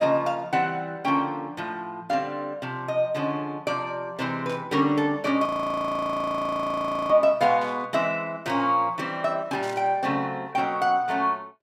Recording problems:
static burst; at 4.5 s, at 7.5 s and at 9.5 s; peak -12 dB vs average level
frozen audio; at 5.5 s for 1.5 s

